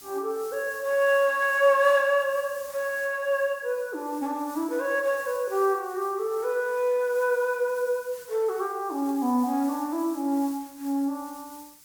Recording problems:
hiss; SNR 20 dB

